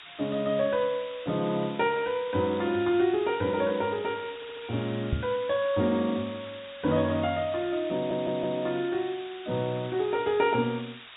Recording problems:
low-pass filter; nothing above 4 kHz
hiss; SNR 16 dB
audio stuttering; at 4.5 s and at 8 s
microphone bump; at 5 s; peak +3 dB vs average level

